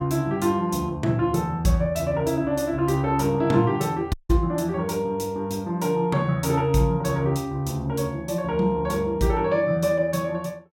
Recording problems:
dropout; at 4 s

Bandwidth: 17 kHz